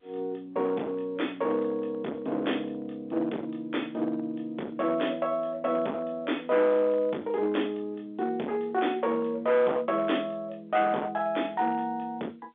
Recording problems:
telephone audio; 240 Hz to 3.6 kHz, G.711
distorted audio; hard clipping, signal-to-distortion ratio 8 dB

